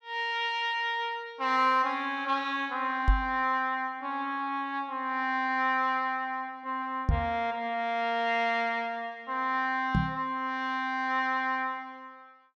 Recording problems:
microphone bump; at 3 s, at 7 s and at 10 s; peak +7 dB vs average level

